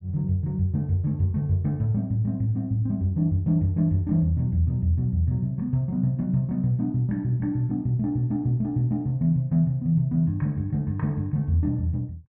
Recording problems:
none

